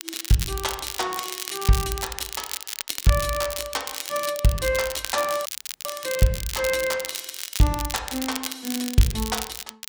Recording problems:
crackling; vinyl, SNR 6 dB
audio cutting out; at 5.5 s

